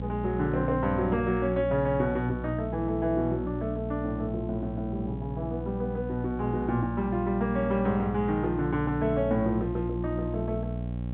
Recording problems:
treble cut off; nothing above 4 kHz
hum; 60 Hz, harmonics up to 780 Hz, SNR 6 dB

